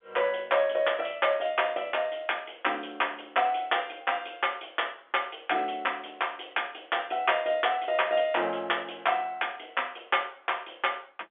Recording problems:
phone line; 260 Hz to 3.5 kHz, G.711

